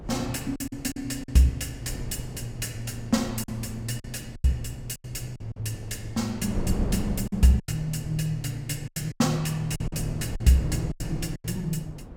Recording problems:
hum; 50 Hz, harmonics up to 350 Hz, SNR 27 dB
wind noise; below 240 Hz, SNR 10 dB
lost packets; 9% of the sound replaced, filled with silence

